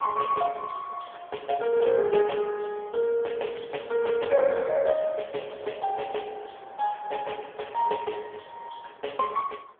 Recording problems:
telephone audio; 320 Hz to 3.3 kHz, AMR-NB
wind on the microphone; below 1.2 kHz, SNR 22 dB

